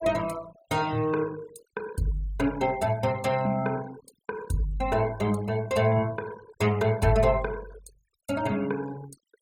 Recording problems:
noise reduction artefacts; signal-to-artefact ratio 21 dB

